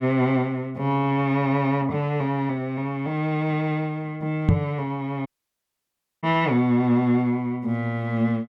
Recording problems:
microphone thump; at 4.5 s; peak +9 dB vs average level
audio cutting out; at 5.5 s for 1 s

